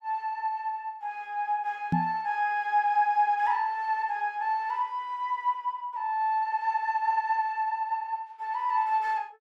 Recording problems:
microphone thump; at 2 s; peak +5 dB vs average level

